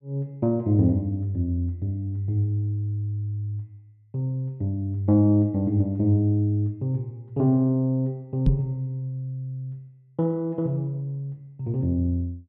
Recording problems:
knock on the microphone; at 8.5 s; peak +6 dB vs average level

